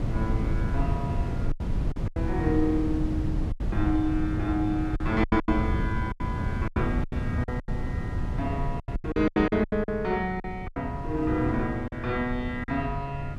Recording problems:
wind noise; below 150 Hz, SNR 2 dB
lost packets; 11% of the sound replaced, filled with silence

